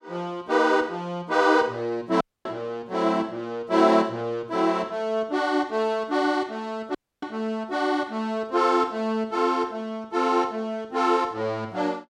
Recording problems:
audio cutting out; at 2 s and at 7 s

